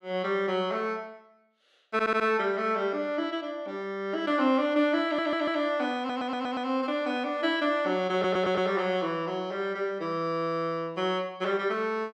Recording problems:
audio stuttering; 4 times, first at 2 s

